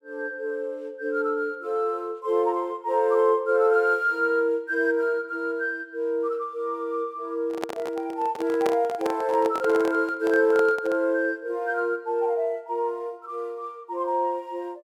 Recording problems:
handling noise; from 7.5 to 11 s; peak 0 dB vs average level

